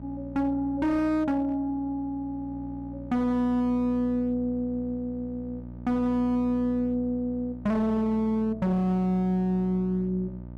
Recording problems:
distortion; hard clipping, signal-to-distortion ratio 12 dB
hum; 60 Hz, harmonics up to 960 Hz, SNR 15 dB

